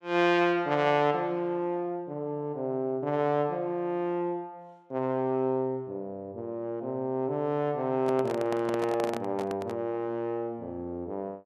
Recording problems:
handling noise; from 8 to 10 s; peak -1 dB vs average level

